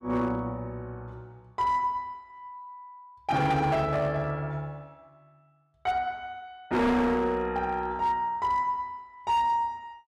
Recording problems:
distorted audio; hard clipping, signal-to-distortion ratio 10 dB

